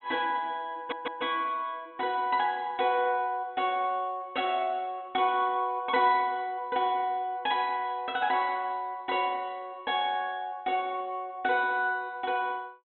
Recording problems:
treble missing; nothing above 4.1 kHz
stutter; at 1 s

